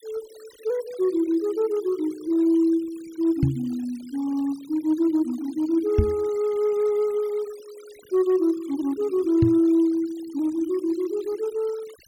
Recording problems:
denoising artefacts; signal-to-artefact ratio 25 dB
microphone bump; at 3.5 s, at 6 s and at 9.5 s; peak +7 dB vs average level

